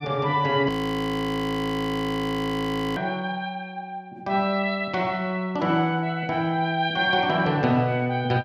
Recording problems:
frozen audio; at 0.5 s for 2.5 s

